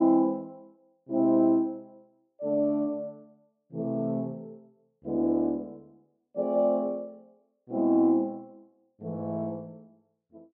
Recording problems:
none

